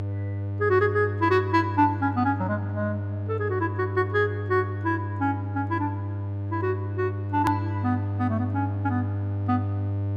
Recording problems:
electrical hum; 50 Hz, harmonics up to 600 Hz, SNR 4 dB
click at an edit; at 7.5 s

